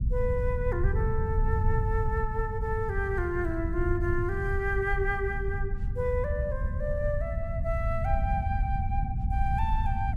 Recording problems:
rumble; below 98 Hz, SNR -1 dB

